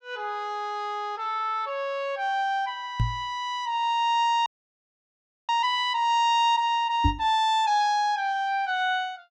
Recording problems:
knock on the microphone; at 3 s and at 7 s; peak +5 dB vs average level
audio freezing; at 4.5 s for 1 s

